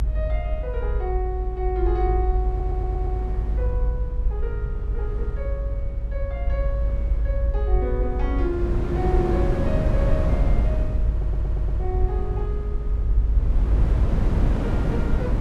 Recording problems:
rumble; below 56 Hz, strongest tone 52 Hz, SNR -6 dB
wind noise; below 230 Hz, SNR -2 dB
audio stuttering; at 2.5 s and at 11 s

